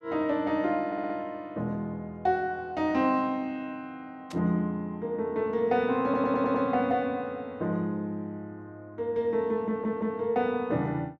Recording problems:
audio stuttering; at 1 s, at 6 s and at 9.5 s
burst of static; at 4.5 s; peak -11 dB vs average level

